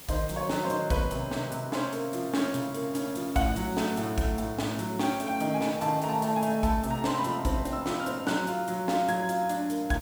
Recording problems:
hiss; SNR 18 dB

